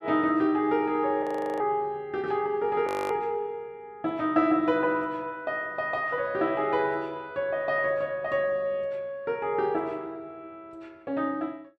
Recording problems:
frozen audio; at 1 s and at 3 s

